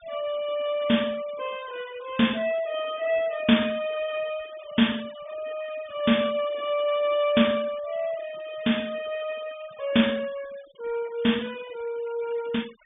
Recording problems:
treble cut off; nothing above 3.6 kHz
denoising artefacts; signal-to-artefact ratio 21 dB

